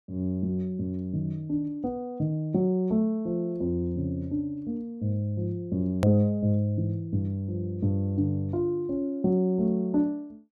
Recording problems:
hard cut with a click; at 6 s

